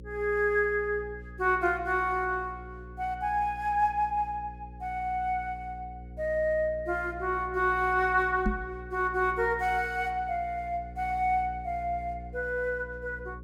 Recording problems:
electrical hum; 60 Hz, harmonics up to 540 Hz, SNR 16 dB
microphone bump; at 8.5 s; peak +4 dB vs average level

